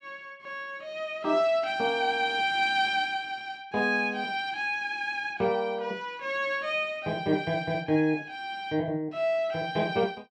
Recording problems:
none

